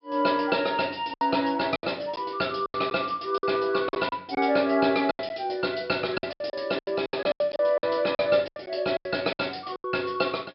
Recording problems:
low-pass filter; nothing above 5.4 kHz
packet loss; 13% of the sound replaced, filled with silence

